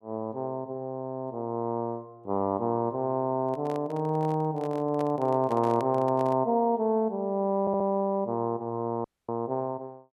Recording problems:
handling noise; from 3.5 to 6.5 s; peak -6 dB vs average level
stutter; at 7.5 s
dropout; at 9 s

